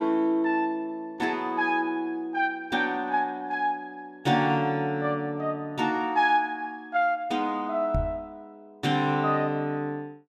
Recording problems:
knock on the microphone; at 8 s; peak +1 dB vs average level

